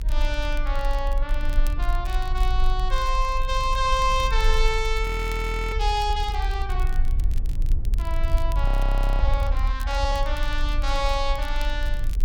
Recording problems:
rumble; below 46 Hz, strongest tone 24 Hz, SNR 0 dB
crackling; vinyl, SNR 20 dB
frozen audio; at 5 s for 0.5 s and at 8.5 s for 0.5 s

